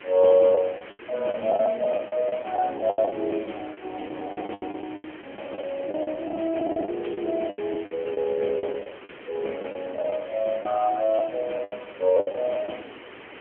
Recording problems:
telephone audio; 240 Hz to 3.3 kHz, AMR-NB
hiss; SNR 17 dB
packet loss; 15% of the sound replaced, filled with the last packet

